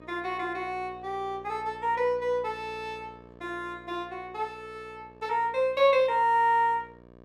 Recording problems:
hum; 60 Hz, harmonics up to 1.7 kHz, SNR 23 dB

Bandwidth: 15.5 kHz